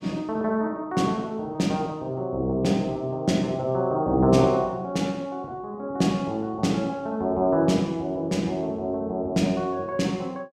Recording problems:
none

